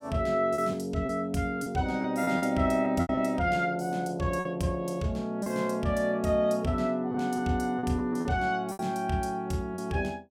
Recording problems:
lost packets; 6% of the sound replaced, filled with repeated pitch periods

